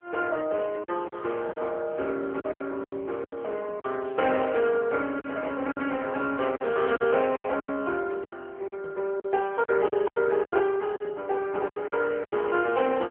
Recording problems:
phone line; 260 Hz to 3.3 kHz, AMR-NB
lost packets; 11% of the sound replaced, filled with silence

